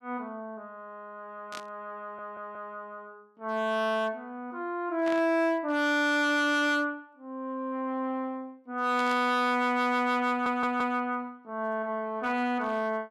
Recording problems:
distorted audio; hard clipping, uneven, signal-to-distortion ratio 10 dB
static burst; at 1.5 s, at 5 s and at 9 s; peak -9 dB vs average level
audio stuttering; at 2 s and at 10 s

